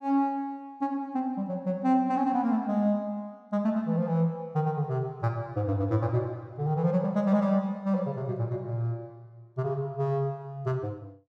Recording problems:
none

